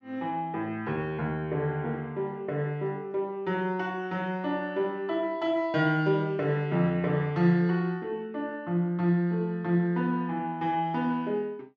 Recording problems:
none

